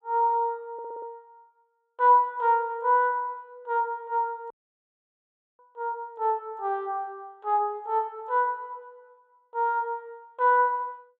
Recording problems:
stutter; at 0.5 s
audio cutting out; at 4.5 s for 1 s

